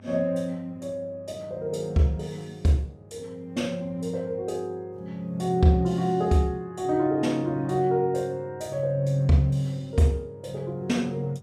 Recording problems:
hum; 50 Hz, harmonics up to 1 kHz, SNR 23 dB

